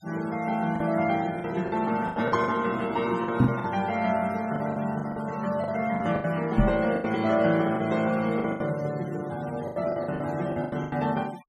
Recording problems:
noise reduction artefacts; signal-to-artefact ratio 20 dB
lost packets; 12% of the sound replaced, filled with the last packet
microphone thump; at 3.5 s and at 6.5 s; peak +10 dB vs average level

